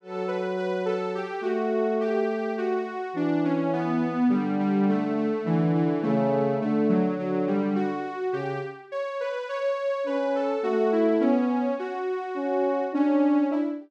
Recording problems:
none

